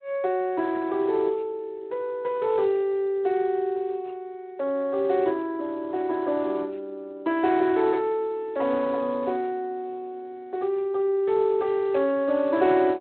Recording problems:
telephone audio; 280 Hz to 3.8 kHz, Speex

